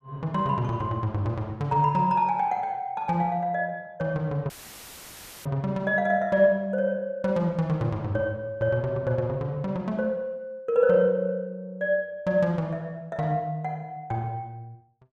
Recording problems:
dropout; at 4.5 s for 1 s; filled with static

